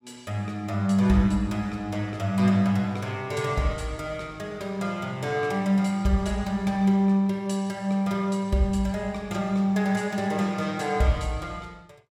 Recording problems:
none

